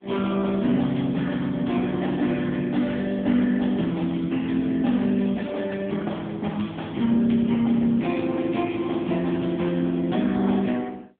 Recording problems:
telephone audio; 130 Hz to 3.5 kHz, AMR-NB

